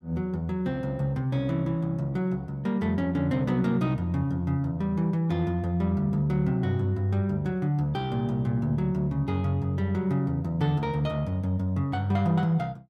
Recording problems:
none

